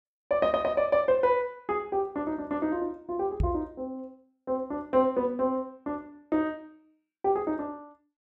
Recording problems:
microphone bump; at 3.5 s; peak +4 dB vs average level

